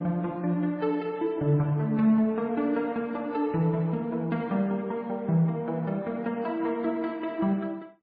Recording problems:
codec artefacts; AAC, then MP3, log-spectral distance 2 dB, nothing above 11.3 kHz

